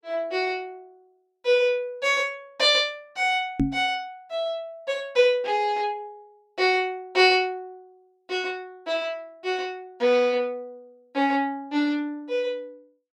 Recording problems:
microphone thump; at 3.5 s; peak +5 dB vs average level

